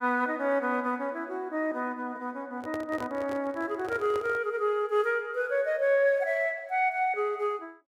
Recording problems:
handling noise; from 2.5 to 4.5 s; peak -6 dB vs average level

